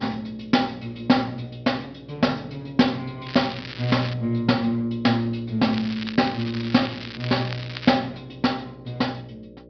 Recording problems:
low-pass filter; nothing above 5.5 kHz
mains hum; 60 Hz, harmonics up to 600 Hz, SNR 22 dB
crackling; at 3.5 s and from 5.5 to 8 s; loose cable, SNR 12 dB

